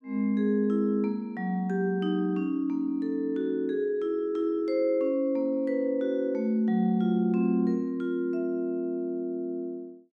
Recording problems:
none

